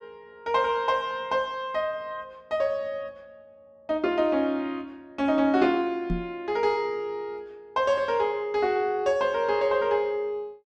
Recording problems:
knock on the microphone; at 6 s; peak +1 dB vs average level

